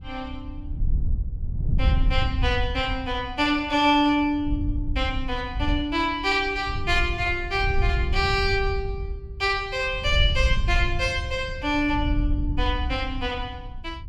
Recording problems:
wind on the microphone; below 78 Hz, SNR 4 dB

